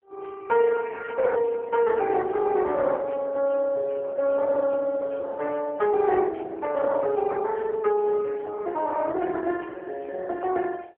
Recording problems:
phone line; 320 Hz to 2.8 kHz, AMR-NB

